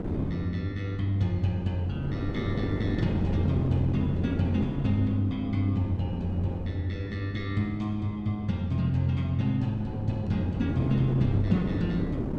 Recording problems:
wind noise; below 330 Hz, SNR 6 dB

